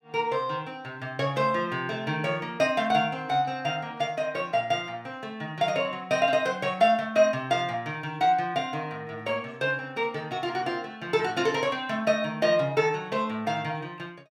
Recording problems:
none

